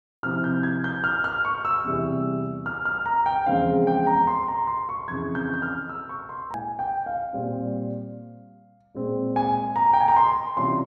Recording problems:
edit click; at 6.5 s

